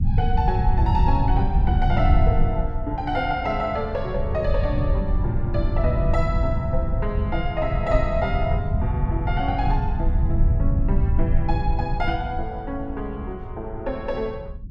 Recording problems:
low-frequency rumble; below 110 Hz, SNR -3 dB

